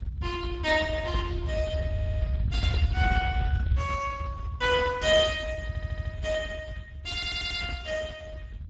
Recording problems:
codec artefacts; Speex, log-spectral distance 2 dB, nothing above 7.3 kHz
rumble; below 100 Hz, SNR 3 dB
audio stuttering; at 2 s, at 5.5 s and at 7 s

